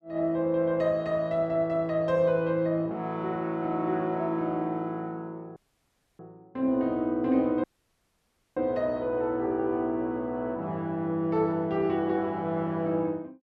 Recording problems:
audio cutting out; at 5.5 s for 0.5 s and at 7.5 s for 1 s

